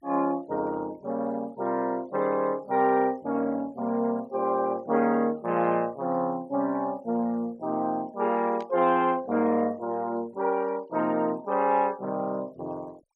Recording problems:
noise reduction artefacts; signal-to-artefact ratio 27 dB
static burst; at 8.5 s; peak -17 dB vs average level

